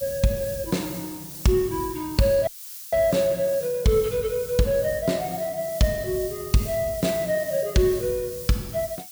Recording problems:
background hiss; SNR 12 dB
dropout; at 2.5 s

